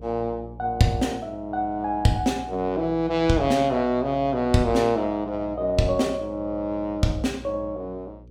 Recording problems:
electrical hum; 60 Hz, harmonics up to 540 Hz, SNR 19 dB

